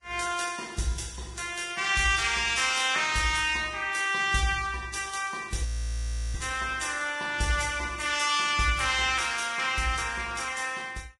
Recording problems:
lossy codec; Vorbis, log-spectral distance 6 dB, nothing above 10.7 kHz
audio freezing; at 5.5 s for 0.5 s

